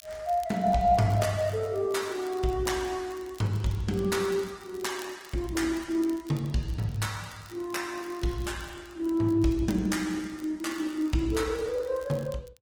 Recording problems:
lossy codec; Opus, log-spectral distance 3 dB
crackling; vinyl, SNR 25 dB

